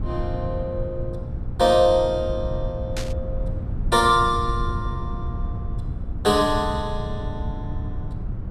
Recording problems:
hum; 60 Hz, harmonics up to 540 Hz, SNR 17 dB
low-frequency rumble; below 110 Hz, SNR 8 dB
burst of static; at 3 s; peak -6 dB vs average level

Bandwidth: 13.5 kHz